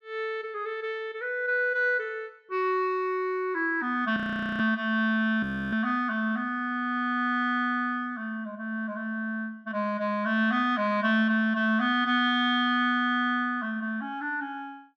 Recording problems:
frozen audio; at 4 s and at 5.5 s

